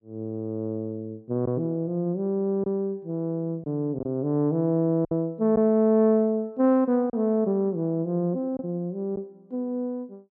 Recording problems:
lost packets; 2% of the sound replaced, filled with silence

